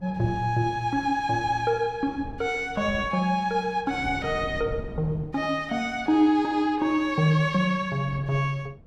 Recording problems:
wind noise; below 220 Hz, SNR 16 dB

